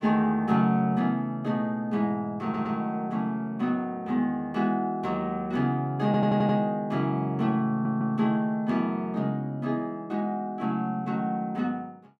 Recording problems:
stutter; at 2.5 s, at 6 s and at 7.5 s

